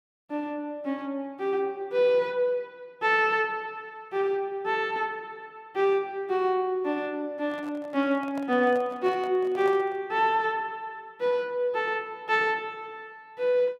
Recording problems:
microphone handling noise; from 7.5 to 10 s; peak -8 dB vs average level

